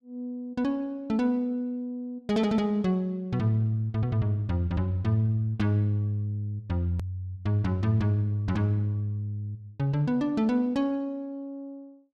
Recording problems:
click at an edit; at 7 s

